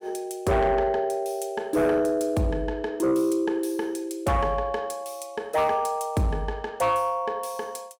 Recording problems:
distorted audio; soft clipping, signal-to-distortion ratio 11 dB

